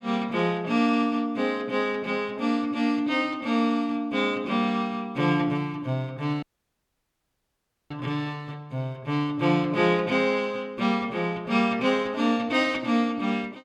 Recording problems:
audio cutting out; at 6.5 s for 1.5 s

